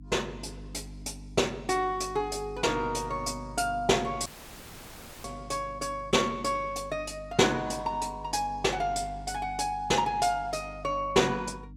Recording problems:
hum; 50 Hz, harmonics up to 300 Hz, SNR 17 dB
dropout; at 4.5 s for 1 s

